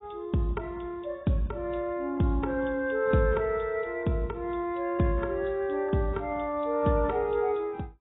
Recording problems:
lossy codec; AAC, log-spectral distance 2 dB, nothing above 3.8 kHz

